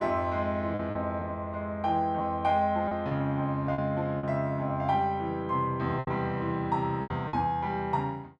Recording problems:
lost packets; 6% of the sound replaced, filled with repeated pitch periods

